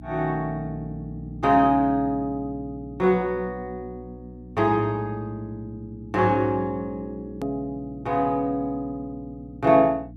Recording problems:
hum; 60 Hz, harmonics up to 300 Hz, SNR 17 dB
click at an edit; at 7.5 s

